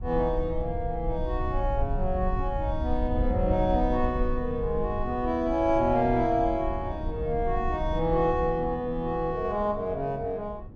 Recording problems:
low-frequency rumble; below 70 Hz, SNR 7 dB
wind on the microphone; below 310 Hz, SNR 17 dB

